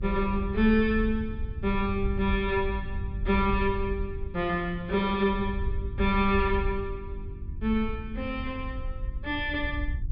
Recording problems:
treble missing; nothing above 5.1 kHz
electrical hum; 50 Hz, harmonics up to 350 Hz, SNR 21 dB
wind on the microphone; below 76 Hz, SNR 7 dB

